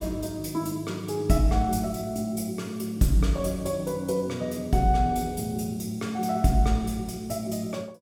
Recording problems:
none

